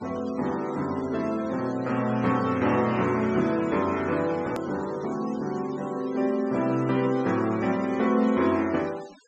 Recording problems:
treble cut off; nothing above 8 kHz
denoising artefacts; signal-to-artefact ratio 20 dB
click at an edit; at 4.5 s

